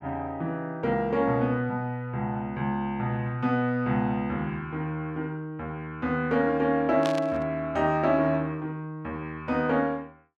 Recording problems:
static burst; at 7 s; peak -2 dB vs average level

